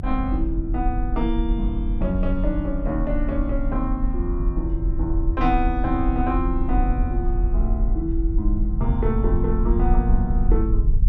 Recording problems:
rumble; below 52 Hz, SNR -1 dB

